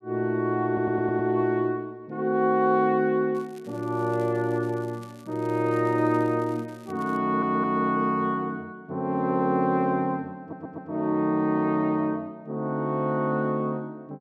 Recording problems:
stutter; at 0.5 s, at 7 s and at 10 s
crackle; from 3.5 to 7 s; loose cable, SNR 29 dB

